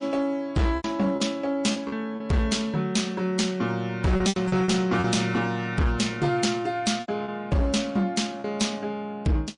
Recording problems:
lossy codec; MP3, log-spectral distance 2 dB, nothing above 10.1 kHz
distortion; hard clipping, signal-to-distortion ratio 11 dB
lost packets; 7% of the sound replaced, filled with repeated pitch periods

